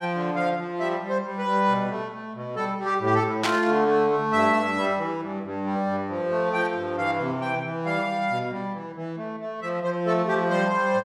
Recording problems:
burst of static; at 3.5 s; peak +4 dB vs average level

